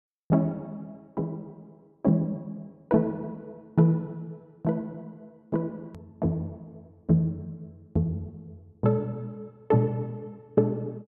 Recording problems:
edit click; at 6 s

